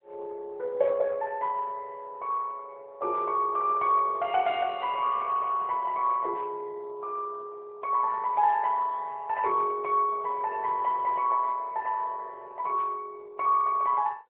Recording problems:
phone line; 340 Hz to 3.6 kHz, AMR-NB

